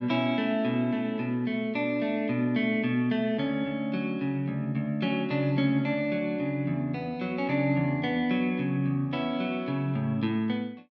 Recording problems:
none

